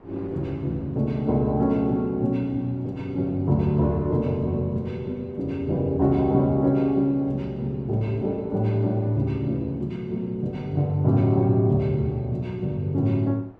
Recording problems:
wind noise; below 790 Hz, SNR 27 dB

